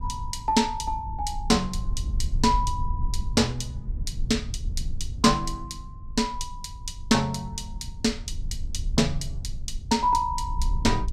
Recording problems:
rumble; below 68 Hz, SNR 8 dB

